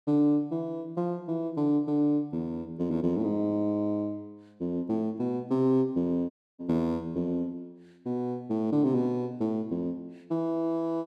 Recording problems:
dropout; at 6.5 s

